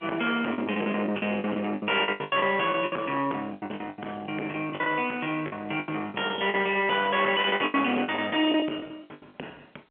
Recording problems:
telephone audio; 280 Hz to 3.3 kHz, G.711
distorted audio; soft clipping, signal-to-distortion ratio 9 dB
lost packets; 17% of the sound replaced, filled with the last packet

